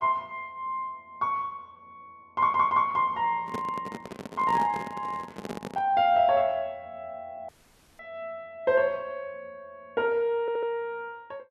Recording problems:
audio stuttering; at 2.5 s and at 10 s
microphone handling noise; from 3.5 to 6 s; peak -3 dB vs average level
dropout; at 7.5 s for 0.5 s

